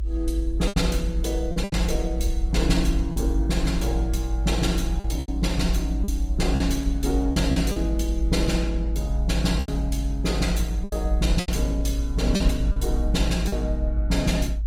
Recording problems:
lossy compression; Opus, log-spectral distance 2 dB
low-frequency rumble; below 54 Hz, strongest tone 52 Hz, SNR 6 dB
packet loss; 6% of the sound replaced, filled with repeated pitch periods

